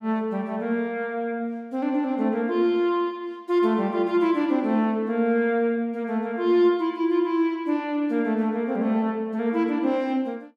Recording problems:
none

